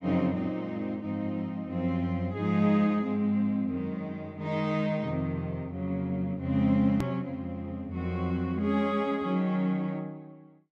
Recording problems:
edit click; at 7 s

